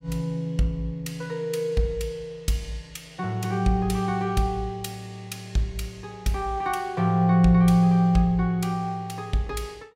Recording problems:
none

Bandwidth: 16 kHz